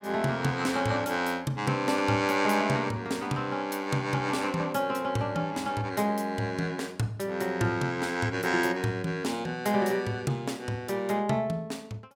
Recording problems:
none

